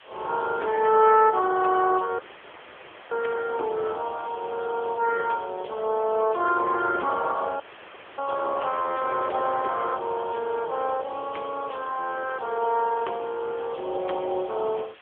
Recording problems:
phone line; 300 Hz to 3 kHz, AMR-NB
hiss; SNR 24 dB
dropout; at 2 s for 1 s and at 7.5 s for 0.5 s

